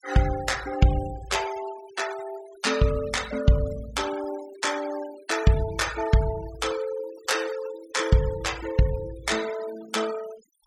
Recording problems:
denoising artefacts; signal-to-artefact ratio 14 dB

